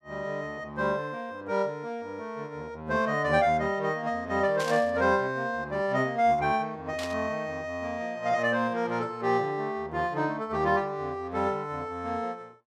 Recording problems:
burst of static; at 4.5 s and at 7 s; peak -4 dB vs average level

